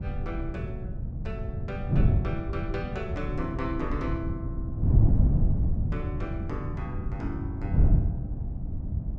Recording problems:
wind on the microphone; below 140 Hz, SNR -7 dB

